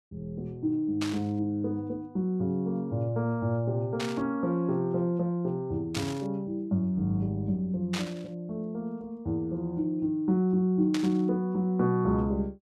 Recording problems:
burst of static; 5 times, first at 1 s; peak -1 dB vs average level

